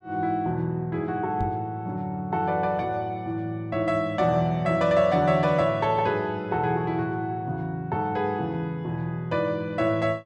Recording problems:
microphone bump; at 1.5 s; peak -1 dB vs average level

